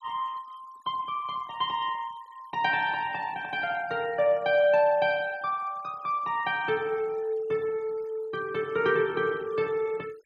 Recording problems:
denoising artefacts; signal-to-artefact ratio 25 dB

